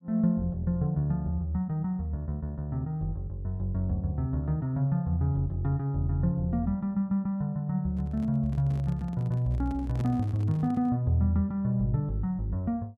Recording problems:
microphone handling noise; from 8 to 11 s; peak -4 dB vs average level

